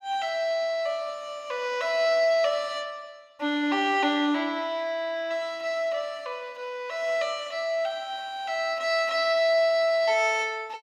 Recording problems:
none

